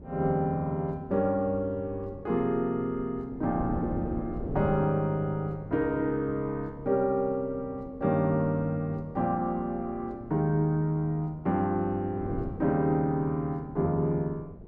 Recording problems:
wind on the microphone; below 350 Hz, SNR 13 dB

